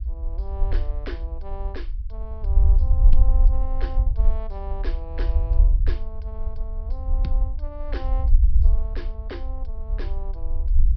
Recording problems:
treble cut off; nothing above 5.5 kHz
low-frequency rumble; below 54 Hz, SNR -14 dB

